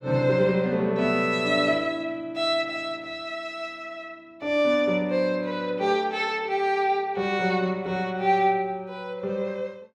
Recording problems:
none

